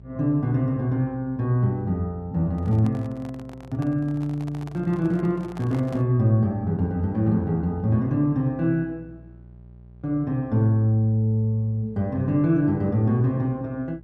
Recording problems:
electrical hum; 60 Hz, harmonics up to 600 Hz, SNR 23 dB
handling noise; from 2.5 to 6 s; peak -12 dB vs average level

